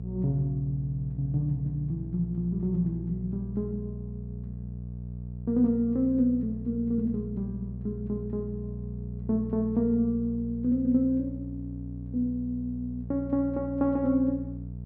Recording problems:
electrical hum; 60 Hz, harmonics up to 480 Hz, SNR 9 dB

